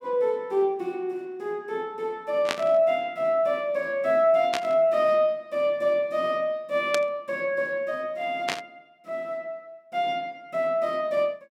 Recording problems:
burst of static; 4 times, first at 2.5 s; peak +3 dB vs average level

